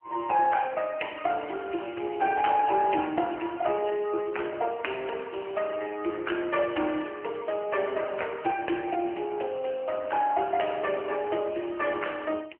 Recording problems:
phone line; 280 Hz to 3 kHz, AMR-NB
crackle; from 3 to 6 s; loose cable, SNR 28 dB

